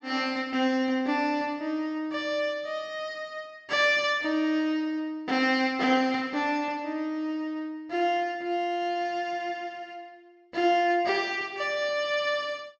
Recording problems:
treble cut off; nothing above 8 kHz

